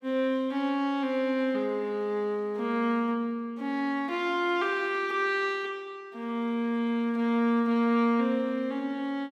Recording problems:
none

